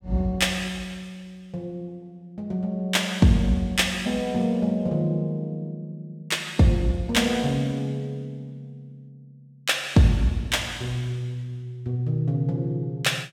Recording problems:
none

